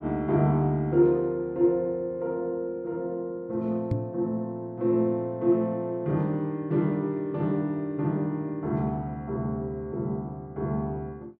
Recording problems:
microphone bump; at 4 s; peak +5 dB vs average level

